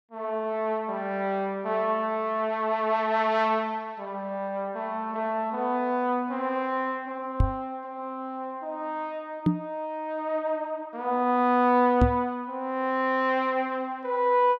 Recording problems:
microphone thump; at 7.5 s, at 9.5 s and at 12 s; peak +9 dB vs average level

